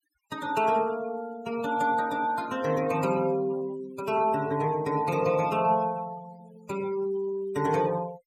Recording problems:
denoising artefacts; signal-to-artefact ratio 19 dB

